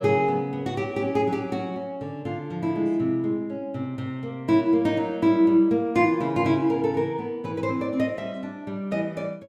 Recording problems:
none

